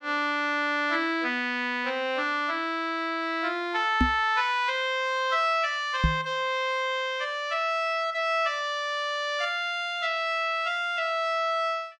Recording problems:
microphone bump; at 4 s and at 6 s; peak +6 dB vs average level

